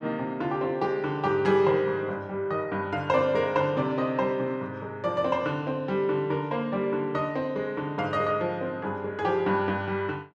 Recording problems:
none

